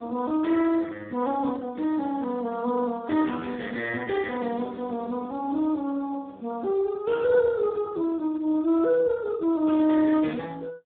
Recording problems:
phone line; 240 Hz to 3.2 kHz, Speex

